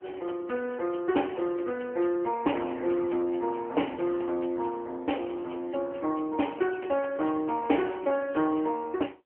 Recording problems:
telephone audio; 260 Hz to 3.2 kHz, AMR-NB

